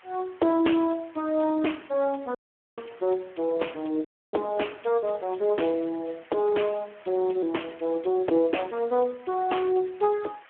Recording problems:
phone line; 260 Hz to 3.3 kHz, Speex
background hiss; SNR 26 dB
dropout; at 2.5 s and at 4 s

